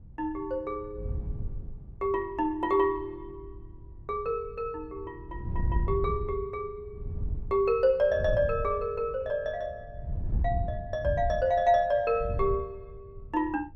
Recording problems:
wind on the microphone; below 100 Hz, SNR 8 dB

